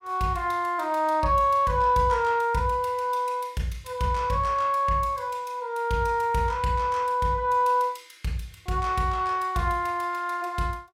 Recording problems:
none

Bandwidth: 16.5 kHz